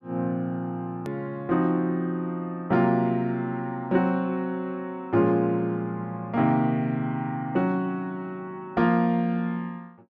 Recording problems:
edit click; at 1 s

